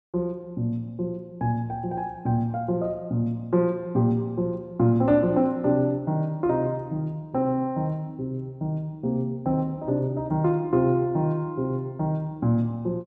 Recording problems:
none

